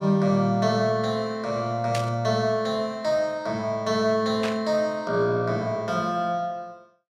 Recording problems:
burst of static; at 2 s and at 4.5 s; peak -3 dB vs average level

